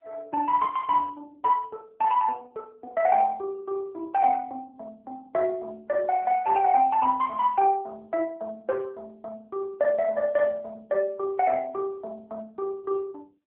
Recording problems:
telephone audio; 320 Hz to 2.6 kHz, AMR-NB

